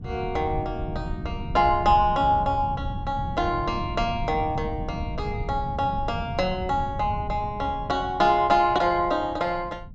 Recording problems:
treble cut off; nothing above 8 kHz
wind noise; below 150 Hz, SNR 9 dB

